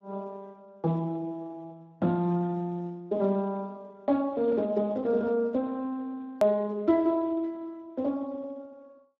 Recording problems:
lossy codec; Speex, log-spectral distance 2 dB, nothing above 13.1 kHz
edit click; at 6.5 s

